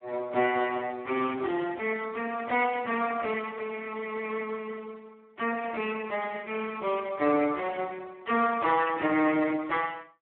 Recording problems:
phone line; 260 Hz to 3.4 kHz, Speex

